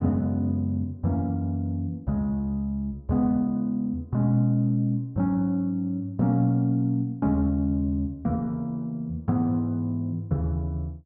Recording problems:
none

